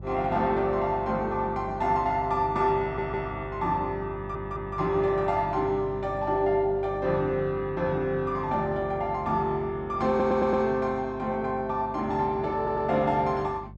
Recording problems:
electrical hum; 50 Hz, harmonics up to 400 Hz, SNR 15 dB
stutter; 4 times, first at 3 s

